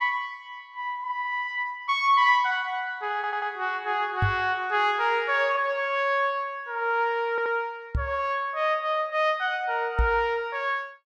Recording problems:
audio stuttering; at 3 s and at 7.5 s
microphone bump; at 4 s, at 8 s and at 10 s; peak +4 dB vs average level

